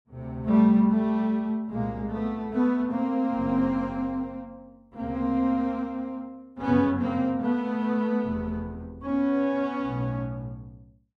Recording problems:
none

